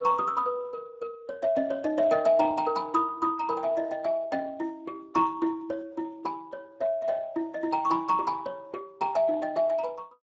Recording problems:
lossy codec; Speex, log-spectral distance 3 dB, nothing above 7.6 kHz

